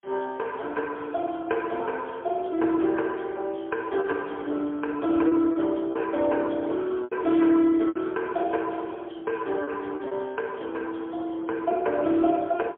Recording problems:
phone line; 260 Hz to 3.4 kHz, AMR-NB, then MP3
lost packets; 3% of the sound replaced, filled with repeated pitch periods

